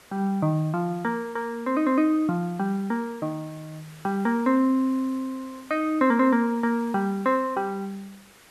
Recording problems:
hiss; slope -2 dB per octave, SNR 25 dB

